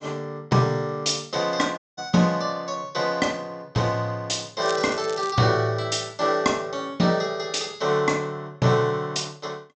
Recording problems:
treble cut off; nothing above 8 kHz
dropout; at 2 s
crackle; at 4.5 s; loose cable, SNR 15 dB

